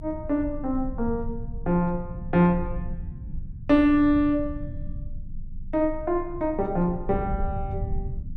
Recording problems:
rumble; below 90 Hz, strongest tone 20 Hz, SNR 11 dB

